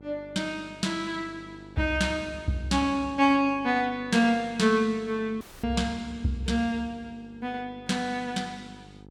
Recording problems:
electrical hum; 50 Hz, harmonics up to 950 Hz, SNR 22 dB
dropout; at 5.5 s

